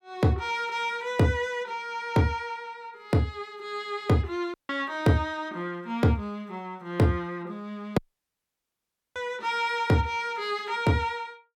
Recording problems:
audio cutting out; at 4.5 s and at 8 s for 1 s

